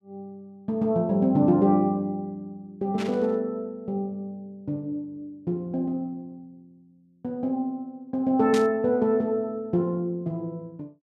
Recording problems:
burst of static; at 3 s and at 8.5 s; peak -4 dB vs average level

